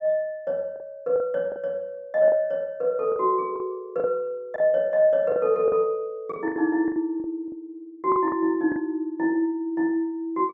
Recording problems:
packet loss; 8% of the sound replaced, filled with the last packet

